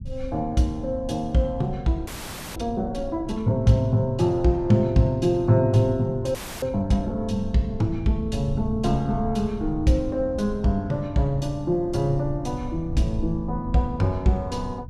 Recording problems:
low-frequency rumble; below 98 Hz, SNR 13 dB
audio freezing; at 2 s and at 6.5 s

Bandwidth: 14 kHz